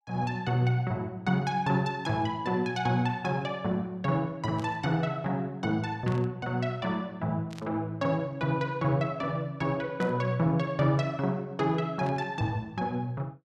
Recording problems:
static burst; 5 times, first at 4.5 s; peak -12 dB vs average level

